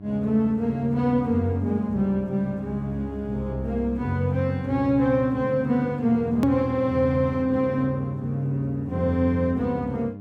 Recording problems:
hum; 50 Hz, harmonics up to 700 Hz, SNR 16 dB
hard cut with a click; at 6.5 s

